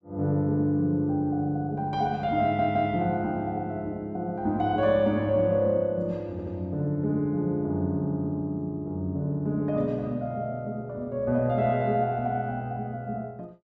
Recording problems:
stutter; at 2.5 s and at 6.5 s

